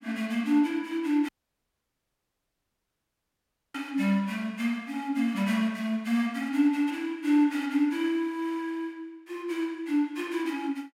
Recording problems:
audio cutting out; at 1.5 s for 2.5 s

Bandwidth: 16.5 kHz